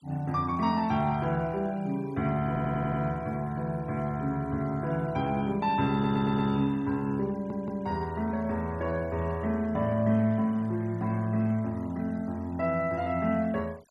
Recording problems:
noise reduction artefacts; signal-to-artefact ratio 26 dB
stutter; at 2.5 s, at 6 s and at 7.5 s

